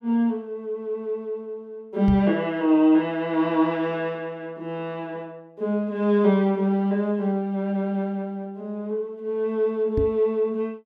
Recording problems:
microphone bump; at 2 s and at 10 s; peak +2 dB vs average level

